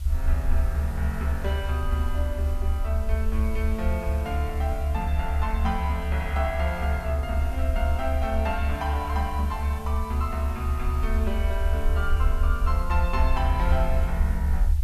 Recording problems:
background hiss; slope 0 dB per octave, SNR 18 dB
rumble; below 74 Hz, SNR -4 dB

